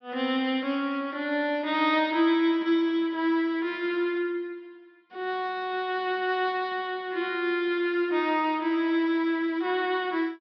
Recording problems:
treble missing; nothing above 5.5 kHz

